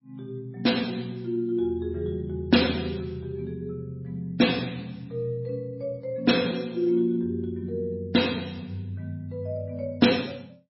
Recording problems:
lossy codec; MP3, log-spectral distance 3 dB, nothing above 5.5 kHz

